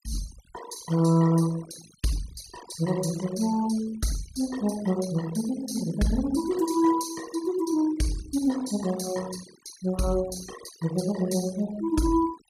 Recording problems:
denoising artefacts; signal-to-artefact ratio 16 dB

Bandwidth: 15.5 kHz